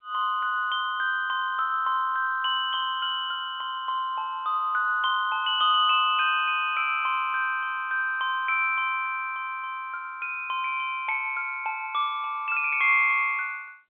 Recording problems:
phone line; 300 Hz to 3.6 kHz, G.711

